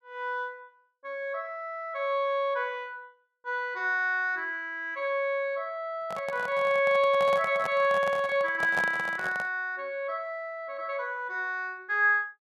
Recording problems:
microphone handling noise; from 6 to 9.5 s; peak -2 dB vs average level

